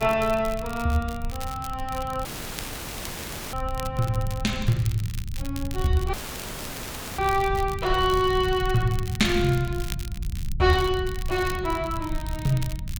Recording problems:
rumble; below 98 Hz, SNR 8 dB
crackle; vinyl, SNR 16 dB
audio cutting out; at 2.5 s for 1.5 s and at 6 s for 1 s

